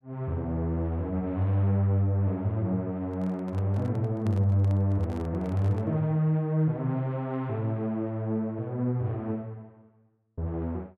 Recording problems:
microphone handling noise; from 3 to 6 s; peak -9 dB vs average level

